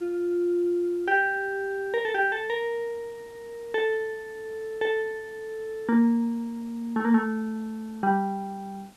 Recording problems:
background hiss; slope -3 dB per octave, SNR 27 dB

